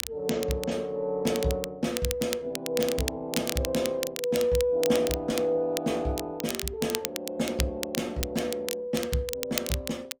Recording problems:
codec artefacts; Opus, log-spectral distance 2 dB, nothing above 19 kHz
crackle; vinyl, SNR 6 dB

